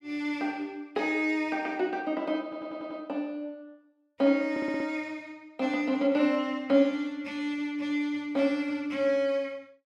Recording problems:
stutter; at 2.5 s and at 4.5 s

